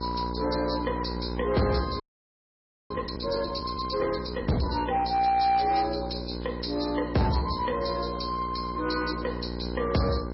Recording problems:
lossy codec; MP3, log-spectral distance 8 dB, nothing above 5.3 kHz
distortion; soft clipping, signal-to-distortion ratio 10 dB
hum; 60 Hz, harmonics up to 1.1 kHz, SNR 7 dB
frozen audio; at 2 s for 1 s

